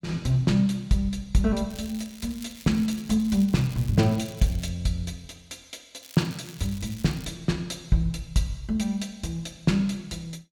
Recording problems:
crackle; from 1.5 to 4.5 s and from 6 to 7.5 s; loose cable, SNR 20 dB

